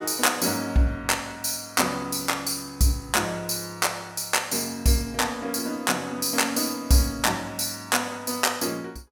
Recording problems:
none

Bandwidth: 18.5 kHz